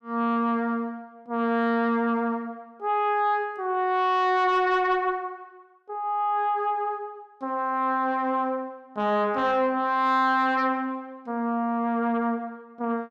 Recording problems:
distorted audio; soft clipping, signal-to-distortion ratio 11 dB

